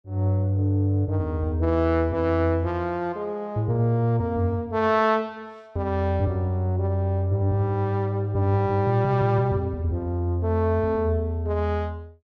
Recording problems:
none

